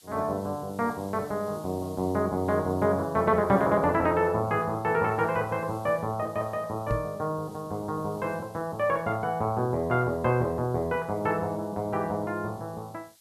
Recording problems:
hiss; slope +3 dB per octave, SNR 26 dB
knock on the microphone; at 7 s; peak +1 dB vs average level

